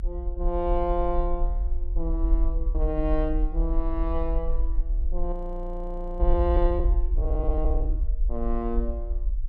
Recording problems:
low-frequency rumble; below 50 Hz, SNR -2 dB
audio freezing; at 5.5 s for 1 s

